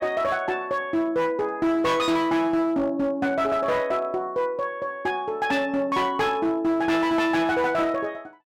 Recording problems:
distortion; hard clipping, signal-to-distortion ratio 11 dB

